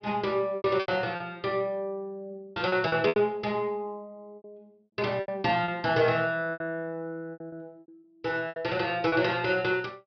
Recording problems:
treble cut off; nothing above 5.5 kHz
packet loss; 11% of the sound replaced, filled with repeated pitch periods

